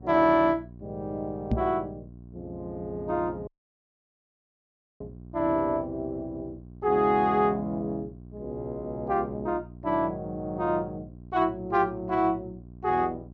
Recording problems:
treble cut off; nothing above 7.3 kHz
hum; 60 Hz, harmonics up to 720 Hz, SNR 18 dB
microphone bump; at 1.5 s; peak +4 dB vs average level
audio cutting out; at 3.5 s for 1.5 s

